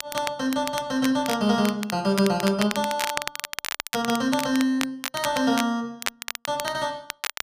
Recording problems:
crackle; vinyl, SNR 8 dB

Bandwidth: 15 kHz